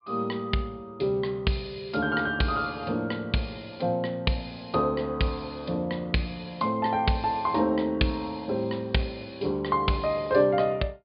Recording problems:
treble missing; nothing above 4.8 kHz

